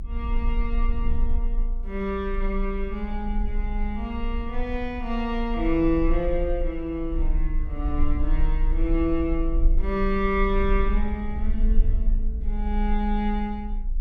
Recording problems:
rumble; below 42 Hz, strongest tone 28 Hz, SNR 1 dB

